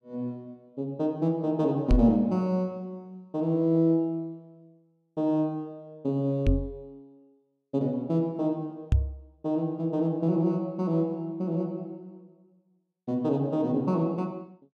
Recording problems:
microphone thump; at 2 s, at 6.5 s and at 9 s; peak +7 dB vs average level

